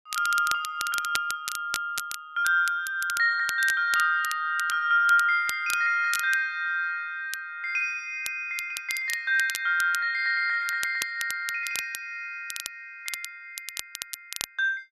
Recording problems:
crackling; vinyl, SNR 11 dB

